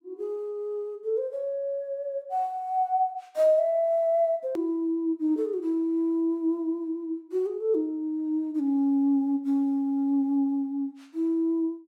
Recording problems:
hard cut with a click; at 4.5 s

